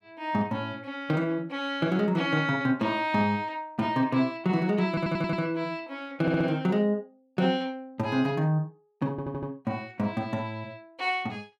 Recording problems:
stutter; at 5 s, at 6 s and at 9 s

